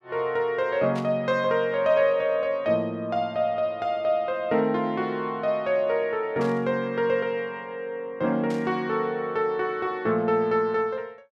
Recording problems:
static burst; at 1 s, at 6.5 s and at 8.5 s; peak -12 dB vs average level

